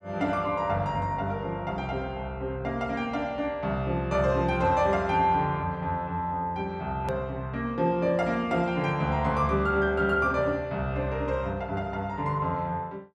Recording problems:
edit click; at 7 s

